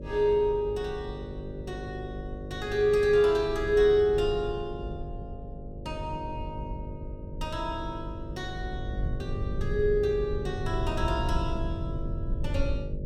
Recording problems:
electrical hum; 50 Hz, harmonics up to 600 Hz, SNR 12 dB
low-frequency rumble; below 100 Hz, SNR 10 dB

